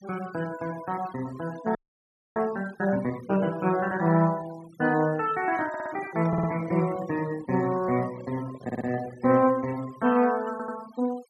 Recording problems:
noise reduction artefacts; signal-to-artefact ratio 21 dB
frozen audio; at 2 s for 0.5 s
microphone handling noise; from 5.5 to 9.5 s; peak -12 dB vs average level
stutter; 4 times, first at 5.5 s

